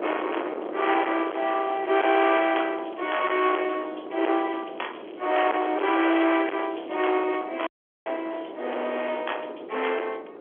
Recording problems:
phone line; 280 Hz to 3.4 kHz, G.711
distortion; hard clipping, uneven, signal-to-distortion ratio 8 dB
wind noise; below 1.2 kHz, SNR 10 dB
crackling; from 1 to 3.5 s, from 4 to 6 s and from 6 to 8 s; loose cable, SNR 27 dB
dropout; at 7.5 s

